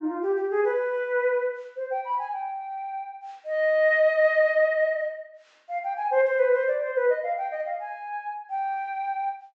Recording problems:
treble cut off; nothing above 8 kHz

